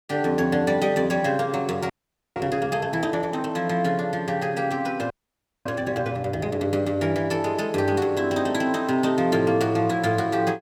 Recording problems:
audio freezing; at 2 s and at 5 s for 0.5 s

